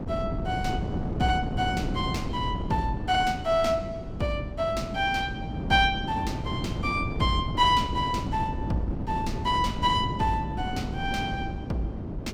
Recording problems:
wind on the microphone; below 290 Hz, SNR 5 dB

